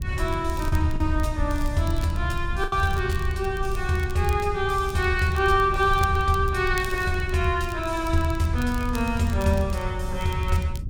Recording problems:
low-frequency rumble; below 80 Hz, SNR 8 dB
crackle; vinyl, SNR 21 dB
packet loss; 1.5% of the sound replaced, filled with the last packet

